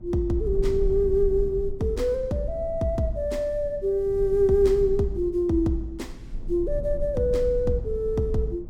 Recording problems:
rumble; below 60 Hz, strongest tone 20 Hz, SNR 11 dB

